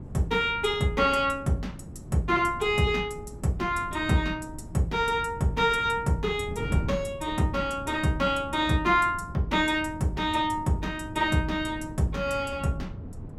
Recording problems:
wind on the microphone; below 210 Hz, SNR 14 dB

